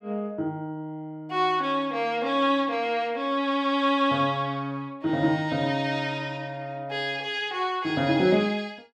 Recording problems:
none

